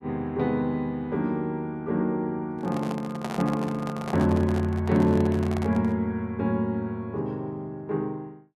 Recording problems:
handling noise; from 2.5 to 6 s; peak -3 dB vs average level

